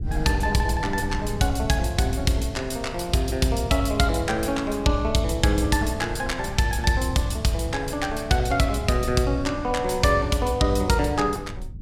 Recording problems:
low-frequency rumble; below 120 Hz, SNR 13 dB

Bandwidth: 16 kHz